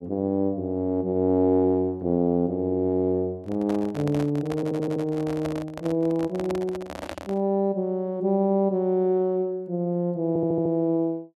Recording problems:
microphone handling noise; from 3.5 to 7.5 s; peak -5 dB vs average level
stutter; at 4.5 s and at 10 s

